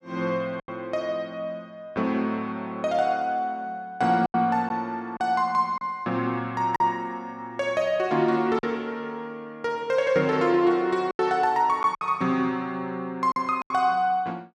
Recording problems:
packet loss; 4% of the sound replaced, filled with silence

